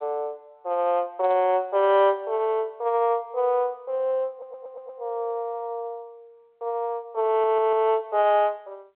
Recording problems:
telephone audio; 340 Hz to 3.5 kHz, G.726
audio stuttering; at 4.5 s and at 7.5 s

